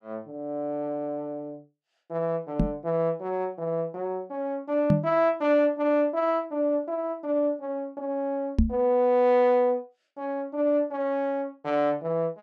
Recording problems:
knock on the microphone; at 2.5 s, at 5 s and at 8.5 s; peak +8 dB vs average level

